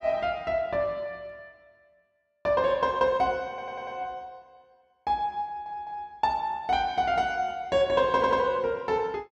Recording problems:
stutter; at 3.5 s, at 5.5 s and at 8 s

